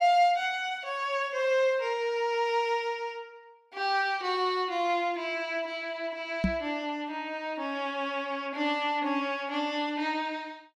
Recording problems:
microphone thump; at 6.5 s; peak +6 dB vs average level

